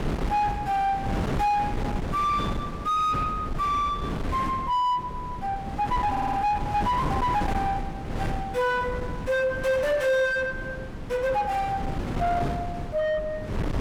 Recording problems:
distorted audio; soft clipping, signal-to-distortion ratio 6 dB
wind on the microphone; below 500 Hz, SNR 6 dB
audio stuttering; at 6 s

